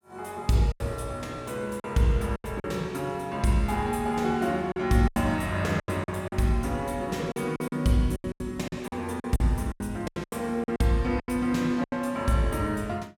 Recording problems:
lost packets; 11% of the sound replaced, filled with silence

